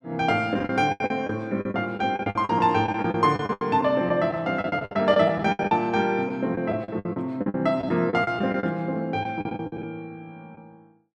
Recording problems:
packet loss; 16% of the sound replaced, filled with the last packet

